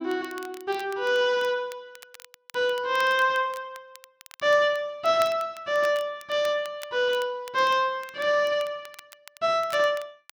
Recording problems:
crackling; vinyl, SNR 22 dB

